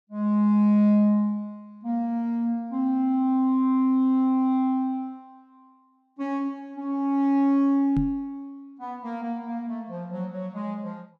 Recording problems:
knock on the microphone; at 8 s; peak -1 dB vs average level

